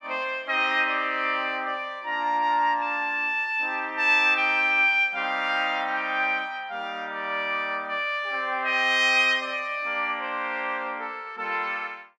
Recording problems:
none

